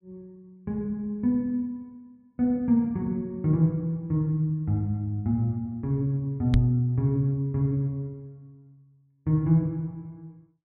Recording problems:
microphone bump; at 6.5 s; peak +7 dB vs average level

